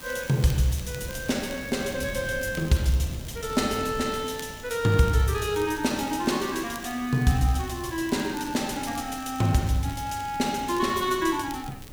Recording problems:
background hiss; slope -2 dB per octave, SNR 21 dB
wind noise; below 220 Hz, SNR 17 dB
crackle; vinyl, SNR 21 dB

